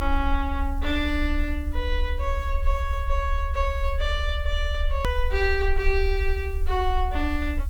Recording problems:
hiss; slope +2 dB per octave, SNR 27 dB
rumble; below 70 Hz, strongest tone 30 Hz, SNR 1 dB
edit click; at 5 s

